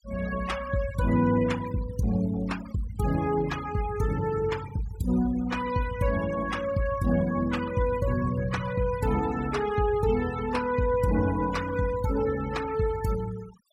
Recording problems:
denoising artefacts; signal-to-artefact ratio 14 dB

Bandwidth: 16 kHz